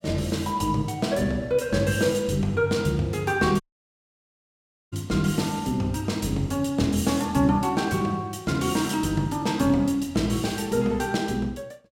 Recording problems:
audio cutting out; at 3.5 s for 1.5 s

